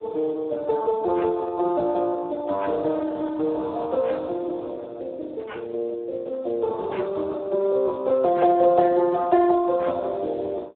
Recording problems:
phone line; 300 Hz to 2.1 kHz, Speex

